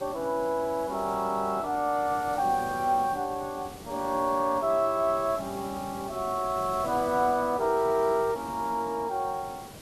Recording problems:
background hiss; slope -5 dB per octave, SNR 16 dB

